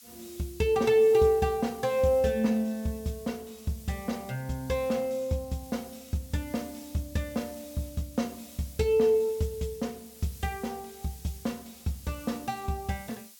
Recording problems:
background hiss; slope +5 dB per octave, SNR 19 dB

